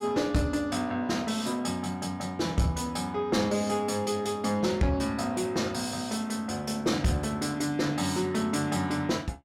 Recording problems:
distortion; soft clipping, signal-to-distortion ratio 12 dB

